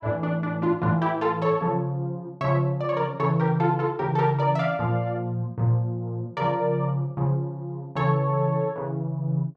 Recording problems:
none

